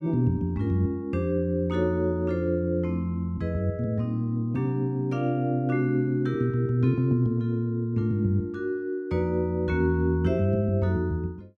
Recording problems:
none

